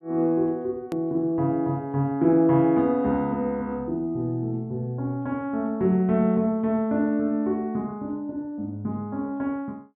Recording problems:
treble missing; nothing above 4 kHz
hard cut with a click; at 1 s

